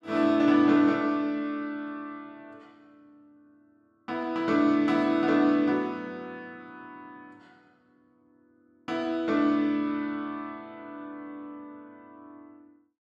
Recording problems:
none

